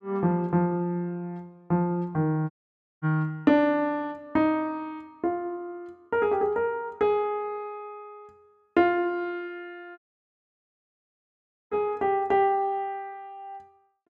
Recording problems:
audio cutting out; at 2.5 s for 0.5 s and at 10 s for 1.5 s

